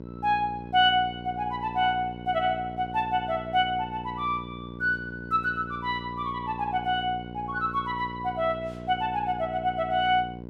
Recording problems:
hum; 60 Hz, harmonics up to 1.1 kHz, SNR 12 dB

